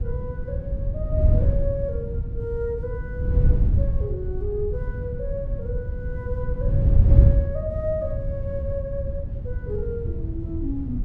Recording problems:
wind noise; below 100 Hz, SNR -7 dB

